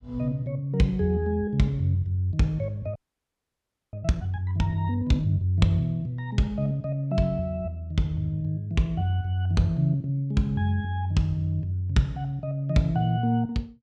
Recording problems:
audio freezing; at 3 s for 1 s

